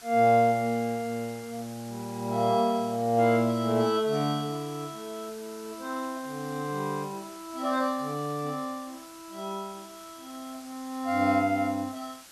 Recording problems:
hiss; slope 0 dB per octave, SNR 19 dB

